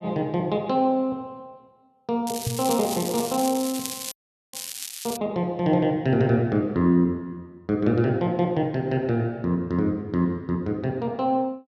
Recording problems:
crackle; from 2.5 to 5 s; loose cable, SNR 8 dB
microphone bump; at 2.5 s; peak -1 dB vs average level
audio freezing; at 4 s

